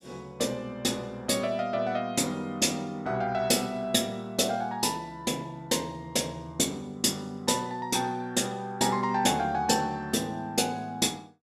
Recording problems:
none

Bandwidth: 15 kHz